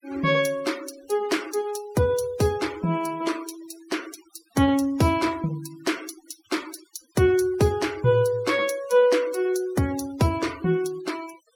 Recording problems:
noise reduction artefacts; signal-to-artefact ratio 19 dB

